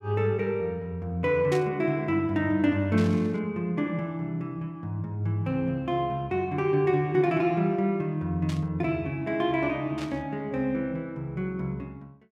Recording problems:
burst of static; 4 times, first at 1.5 s; peak -7 dB vs average level

